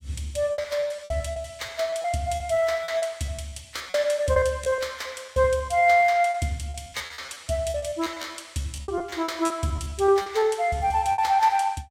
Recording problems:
packet loss; 17% of the sound replaced, filled with repeated pitch periods

